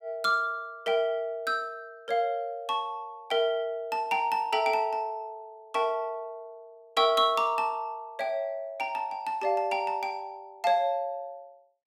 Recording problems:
none

